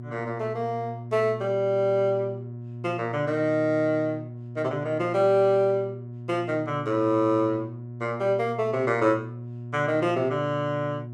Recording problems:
hum; 60 Hz, harmonics up to 600 Hz, SNR 12 dB

